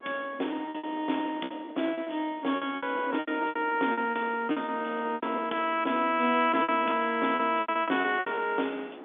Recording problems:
telephone audio; 220 Hz to 3.6 kHz, G.711
wind on the microphone; below 820 Hz, SNR 20 dB
lost packets; 15% of the sound replaced, filled with repeated pitch periods

